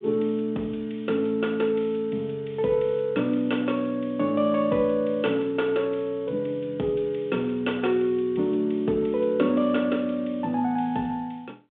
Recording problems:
telephone audio; 170 Hz to 3.6 kHz, G.726

